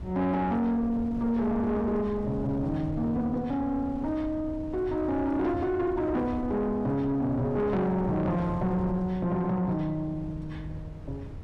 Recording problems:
distortion; soft clipping, signal-to-distortion ratio 10 dB
wind noise; below 190 Hz, SNR 12 dB

